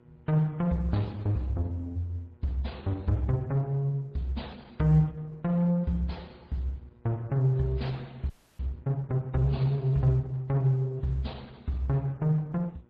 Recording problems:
lossy compression; MP3, then Opus, log-spectral distance 2 dB
electrical hum; 60 Hz, harmonics up to 2.4 kHz, SNR 32 dB
audio freezing; at 8.5 s

